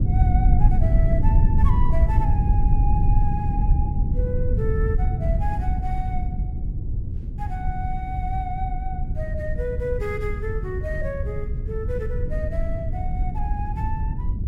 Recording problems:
low-frequency rumble; below 92 Hz, SNR -8 dB

